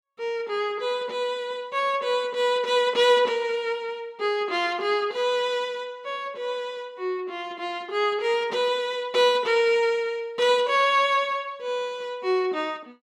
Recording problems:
none

